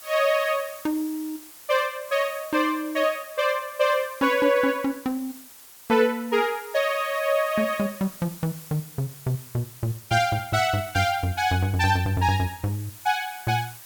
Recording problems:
background hiss; slope +1 dB per octave, SNR 18 dB

